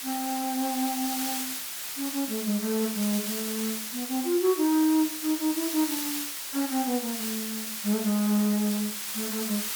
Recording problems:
hiss; slope +2 dB per octave, SNR 3 dB

